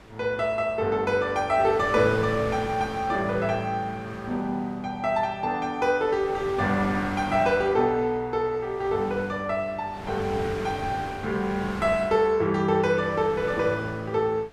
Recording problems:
wind noise; below 1.6 kHz, SNR 14 dB

